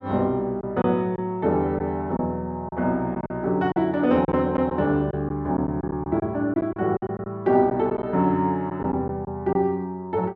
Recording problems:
packet loss; 7% of the sound replaced, filled with silence

